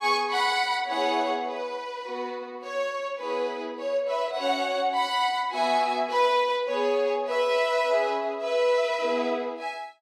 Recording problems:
none

